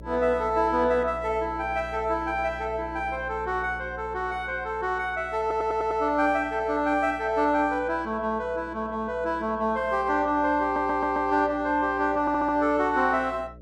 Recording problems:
electrical hum; 60 Hz, harmonics up to 600 Hz, SNR 19 dB
stutter; at 5.5 s, at 11 s and at 12 s

